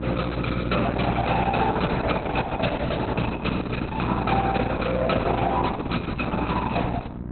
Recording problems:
lossy compression; Opus, log-spectral distance 5 dB, nothing above 4.1 kHz
hum; 60 Hz, harmonics up to 1.3 kHz, SNR 7 dB

